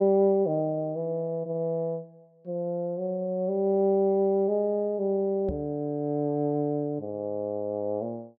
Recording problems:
microphone thump; at 5.5 s; peak -4 dB vs average level

